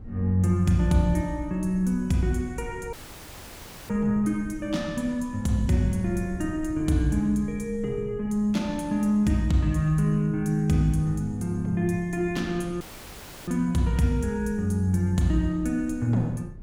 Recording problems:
wind on the microphone; below 130 Hz, SNR 18 dB
audio cutting out; at 3 s for 1 s and at 13 s for 0.5 s

